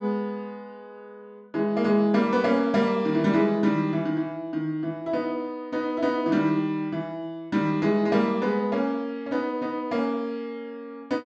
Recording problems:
low-pass filter; nothing above 8 kHz

